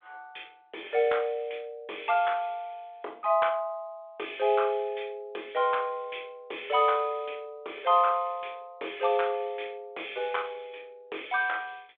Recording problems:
phone line; 280 Hz to 3.6 kHz, G.726

